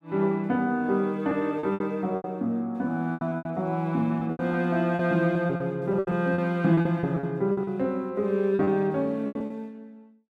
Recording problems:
packet loss; 12% of the sound replaced, filled with repeated pitch periods

